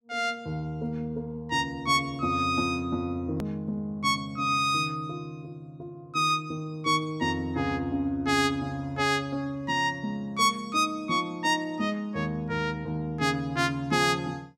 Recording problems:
edit click; at 3.5 s

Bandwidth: 16 kHz